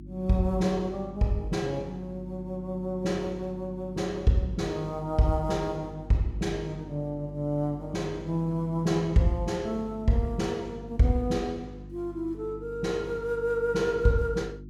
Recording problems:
hum; 50 Hz, harmonics up to 350 Hz, SNR 15 dB

